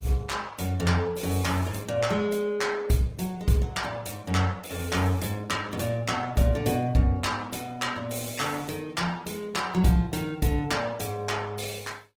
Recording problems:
codec artefacts; Opus, log-spectral distance 4 dB

